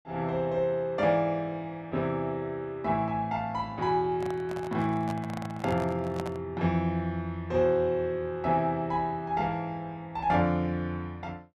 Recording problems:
microphone handling noise; from 4 to 6.5 s; peak -4 dB vs average level

